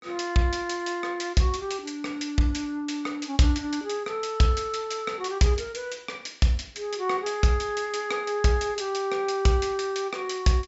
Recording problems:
treble cut off; nothing above 8 kHz

